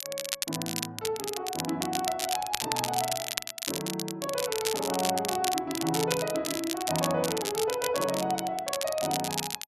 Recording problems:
crackle; vinyl, SNR 2 dB

